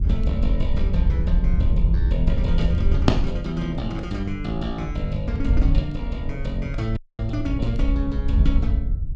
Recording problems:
wind noise; below 68 Hz, SNR -3 dB
audio cutting out; at 7 s

